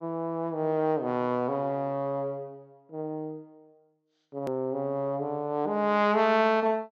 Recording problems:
low-pass filter; nothing above 8 kHz
edit click; at 4.5 s

